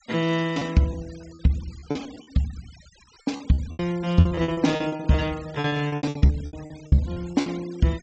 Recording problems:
treble cut off; nothing above 8 kHz
noise reduction artefacts; signal-to-artefact ratio 21 dB
packet loss; 19% of the sound replaced, filled with repeated pitch periods

